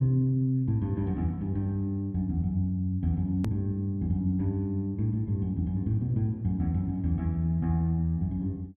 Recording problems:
click at an edit; at 3.5 s

